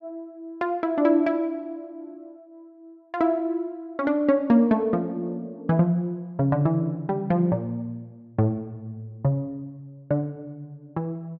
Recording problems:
none

